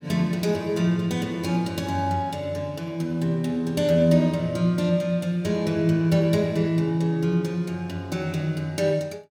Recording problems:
none

